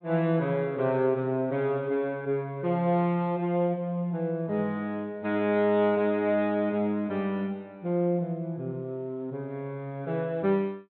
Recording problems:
treble missing; nothing above 4 kHz

